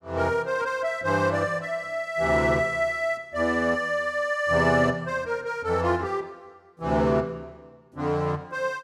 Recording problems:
none

